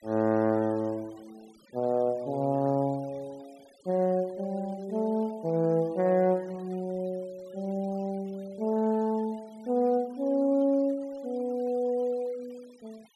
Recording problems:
noise reduction artefacts; signal-to-artefact ratio 27 dB

